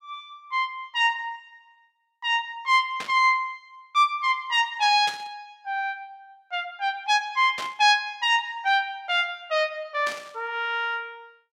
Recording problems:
static burst; 4 times, first at 3 s; peak -6 dB vs average level

